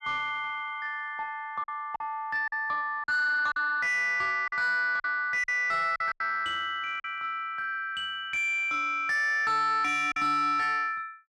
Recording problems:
distorted audio; soft clipping, signal-to-distortion ratio 10 dB
packet loss; 5% of the sound replaced, filled with silence

